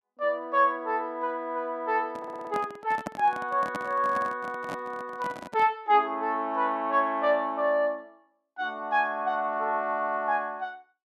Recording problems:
handling noise; from 2 to 6 s; peak -2 dB vs average level
stutter; at 2 s

